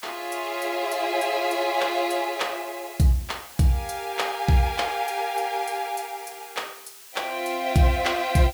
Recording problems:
hiss; slope +3 dB per octave, SNR 17 dB

